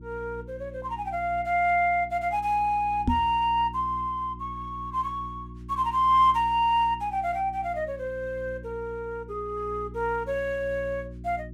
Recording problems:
hum; 60 Hz, harmonics up to 360 Hz, SNR 16 dB
microphone bump; at 3 s; peak +5 dB vs average level

